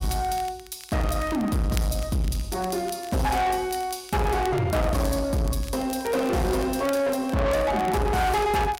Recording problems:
distorted audio; soft clipping, signal-to-distortion ratio 6 dB
crackle; vinyl, SNR 20 dB

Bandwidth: 16 kHz